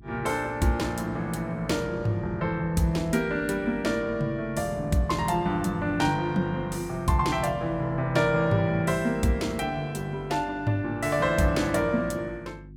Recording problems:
hum; 50 Hz, harmonics up to 350 Hz, SNR 20 dB

